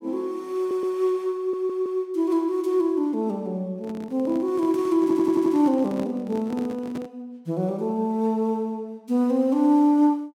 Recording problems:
stutter; at 0.5 s, at 1.5 s and at 5 s
microphone handling noise; from 4 to 7 s; peak -7 dB vs average level

